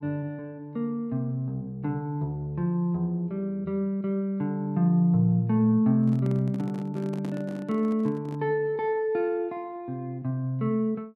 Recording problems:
microphone handling noise; from 6 to 8.5 s; peak -7 dB vs average level

